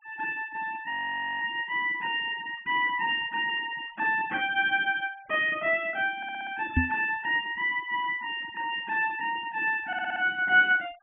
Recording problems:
treble cut off; nothing above 3.1 kHz
noise reduction artefacts; signal-to-artefact ratio 25 dB
audio freezing; at 1 s for 0.5 s
audio stuttering; at 6 s and at 10 s
microphone bump; at 7 s; peak +6 dB vs average level

